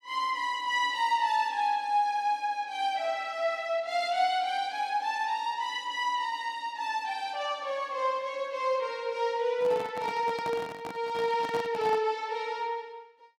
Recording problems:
microphone handling noise; from 9.5 to 12 s; peak -5 dB vs average level

